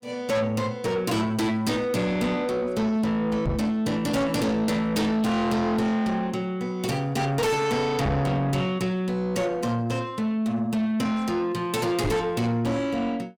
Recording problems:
distortion; soft clipping, signal-to-distortion ratio 7 dB
knock on the microphone; at 3.5 s, at 8 s and at 12 s; peak +3 dB vs average level

